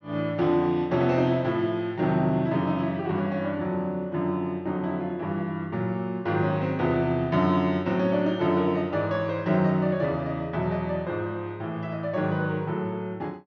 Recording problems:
treble missing; nothing above 6.6 kHz

